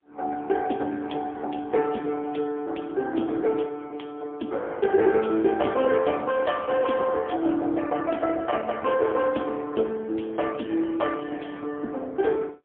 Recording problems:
telephone audio; 240 Hz to 2.6 kHz, AMR-NB, then MP3

